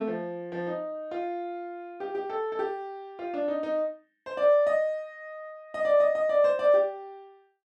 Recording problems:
none

